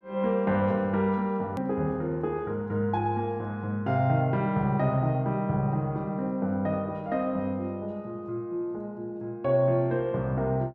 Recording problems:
click at an edit; at 1.5 s

